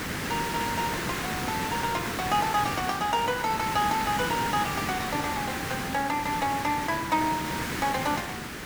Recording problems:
hiss; SNR 2 dB

